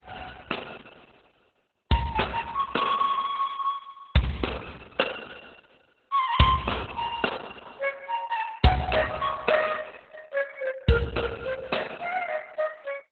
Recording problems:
lossy compression; Opus, then Opus, log-spectral distance 5 dB, nothing above 4 kHz

